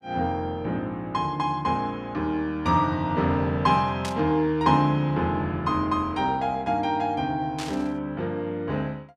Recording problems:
static burst; at 4 s and at 7.5 s; peak -4 dB vs average level

